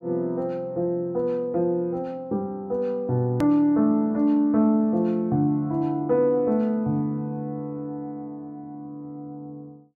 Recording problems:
edit click; at 3.5 s

